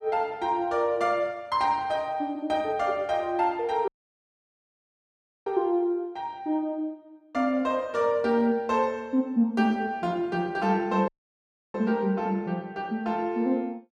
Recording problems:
audio cutting out; at 4 s for 1.5 s and at 11 s for 0.5 s

